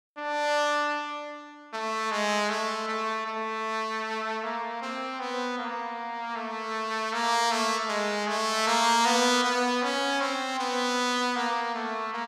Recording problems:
none

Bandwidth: 15 kHz